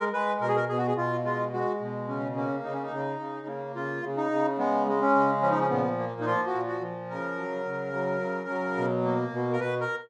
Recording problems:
none

